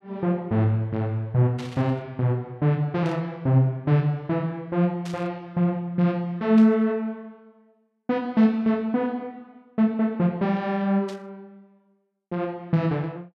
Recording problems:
burst of static; 5 times, first at 1.5 s; peak -12 dB vs average level

